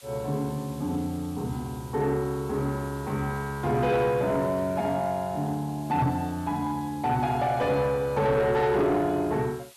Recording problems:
distortion; soft clipping, signal-to-distortion ratio 12 dB
background hiss; SNR 22 dB
microphone thump; at 6 s; peak +5 dB vs average level

